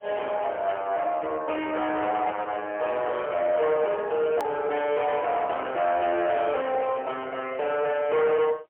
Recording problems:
phone line; 370 Hz to 3.2 kHz, AMR-NB, then MP3
distortion; soft clipping, signal-to-distortion ratio 6 dB
hard cut with a click; at 4.5 s

